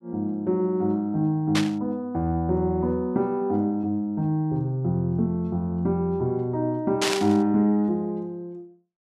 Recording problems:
static burst; at 1.5 s and at 7 s; peak +4 dB vs average level

